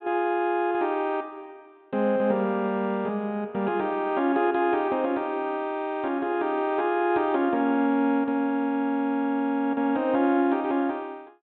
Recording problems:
low-pass filter; nothing above 4 kHz

